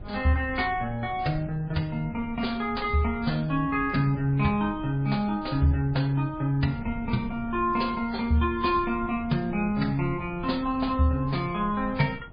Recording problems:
codec artefacts; MP3, log-spectral distance 2 dB, nothing above 4.6 kHz
wind noise; below 140 Hz, SNR 16 dB

